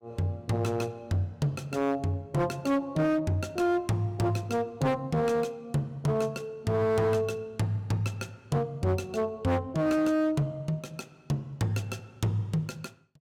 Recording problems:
distorted audio; hard clipping, signal-to-distortion ratio 10 dB

